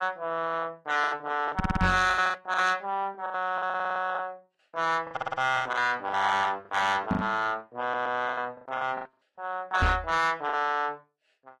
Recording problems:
lossy codec; AAC, log-spectral distance 2 dB, nothing above 13.1 kHz
distortion; soft clipping, signal-to-distortion ratio 11 dB
lost packets; 12% of the sound replaced, filled with the last packet
audio stuttering; 4 times, first at 1.5 s
microphone bump; at 1.5 s, at 7 s and at 10 s; peak +5 dB vs average level

